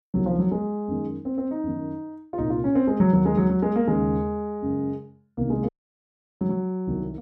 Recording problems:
audio cutting out; at 5.5 s for 0.5 s

